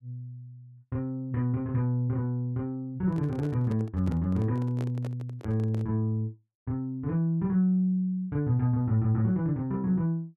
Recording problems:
microphone handling noise; from 3 to 6 s; peak -7 dB vs average level

